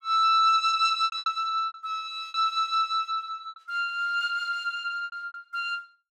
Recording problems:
lost packets; 10% of the sound replaced, filled with repeated pitch periods

